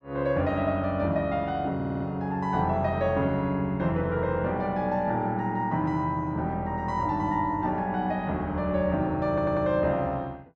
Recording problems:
audio stuttering; at 2 s and at 9.5 s

